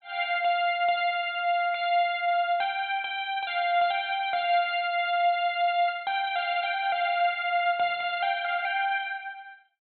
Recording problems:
low-pass filter; nothing above 4.2 kHz

